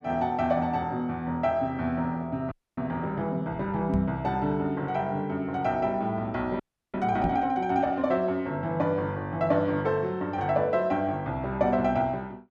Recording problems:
frozen audio; at 2.5 s and at 6.5 s
knock on the microphone; at 4 s and at 7 s; peak +4 dB vs average level

